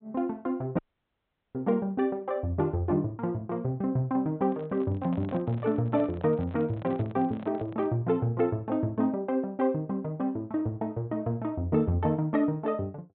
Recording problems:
treble missing; nothing above 4 kHz
dropout; at 1 s for 1 s
handling noise; from 4.5 to 8 s; peak -10 dB vs average level

